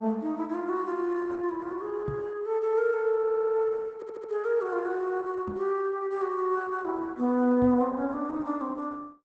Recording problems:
codec artefacts; Opus, log-spectral distance 2 dB, nothing above 8 kHz
microphone bump; at 2 s, at 5.5 s and at 7.5 s; peak -2 dB vs average level
audio stuttering; at 3 s and at 4 s

